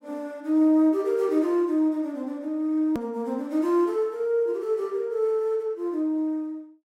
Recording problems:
edit click; at 3 s

